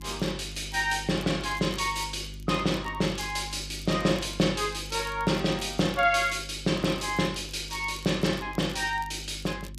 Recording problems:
hum; 50 Hz, harmonics up to 350 Hz, SNR 15 dB
crackling; vinyl, SNR 23 dB

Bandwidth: 14.5 kHz